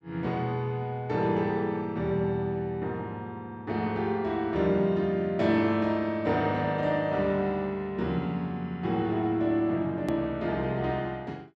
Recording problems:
hard cut with a click; at 10 s

